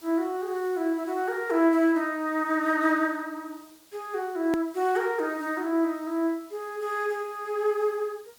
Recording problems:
hiss; slope -1 dB per octave, SNR 26 dB
hard cut with a click; at 4.5 s

